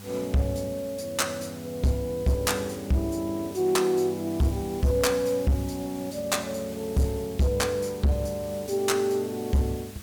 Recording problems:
distortion; hard clipping, signal-to-distortion ratio 10 dB
electrical hum; 50 Hz, harmonics up to 600 Hz, SNR 20 dB
background hiss; slope 0 dB per octave, SNR 18 dB

